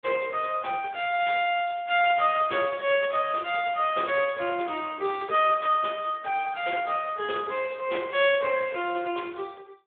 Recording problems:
phone line; 280 Hz to 3.4 kHz, Speex

